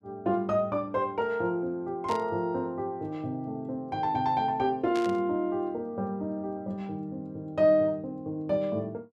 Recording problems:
burst of static; at 2 s and at 5 s; peak -7 dB vs average level

